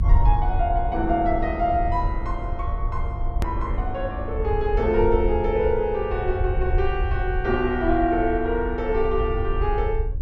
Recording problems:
mains hum; 60 Hz, harmonics up to 1 kHz, SNR 23 dB
low-frequency rumble; below 70 Hz, SNR 4 dB
click at an edit; at 3.5 s

